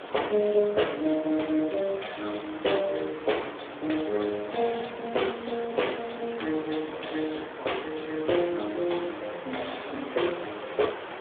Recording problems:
telephone audio; 280 Hz to 3.5 kHz, Speex
background hiss; SNR 10 dB

